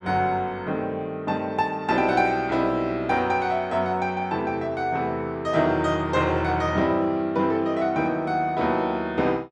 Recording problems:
none

